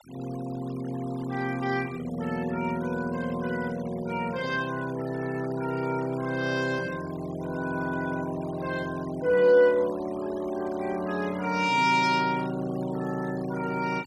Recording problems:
noise reduction artefacts; signal-to-artefact ratio 19 dB

